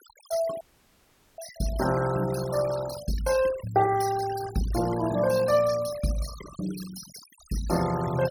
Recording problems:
denoising artefacts; signal-to-artefact ratio 13 dB
dropout; at 0.5 s for 1 s

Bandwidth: 17 kHz